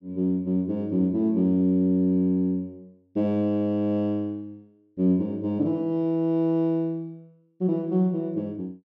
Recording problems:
none

